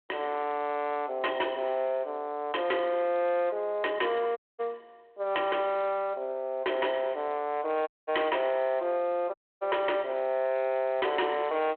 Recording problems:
telephone audio; 300 Hz to 2.9 kHz, G.726
distorted audio; soft clipping, signal-to-distortion ratio 6 dB
dropout; at 4.5 s, at 8 s and at 9.5 s

